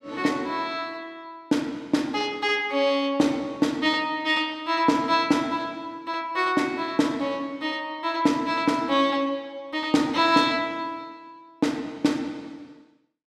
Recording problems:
none

